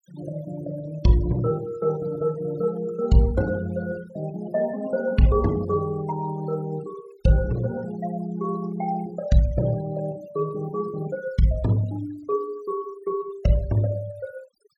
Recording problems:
noise reduction artefacts; signal-to-artefact ratio 19 dB

